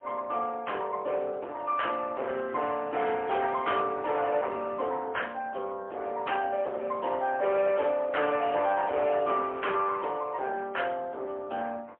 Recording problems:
telephone audio; 320 Hz to 3.2 kHz, AMR-NB, then MP3
distorted audio; soft clipping, signal-to-distortion ratio 11 dB

